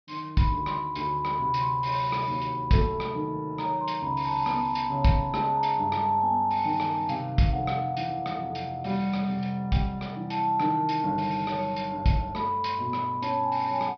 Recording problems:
treble cut off; nothing above 5.5 kHz

